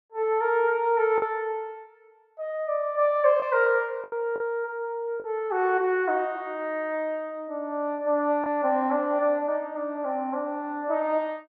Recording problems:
lost packets; 2% of the sound replaced, filled with the last packet

